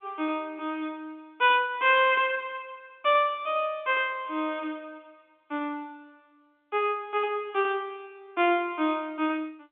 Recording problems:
phone line; 240 Hz to 3.6 kHz, G.711

